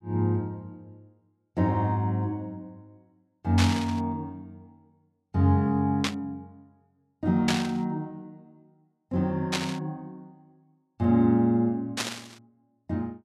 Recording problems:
static burst; 5 times, first at 3.5 s; peak +3 dB vs average level

